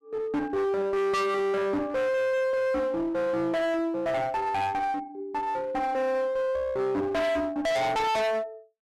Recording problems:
distortion; hard clipping, uneven, signal-to-distortion ratio 5 dB

